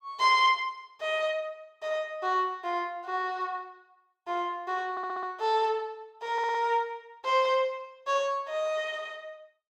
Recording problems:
audio stuttering; at 5 s and at 6.5 s

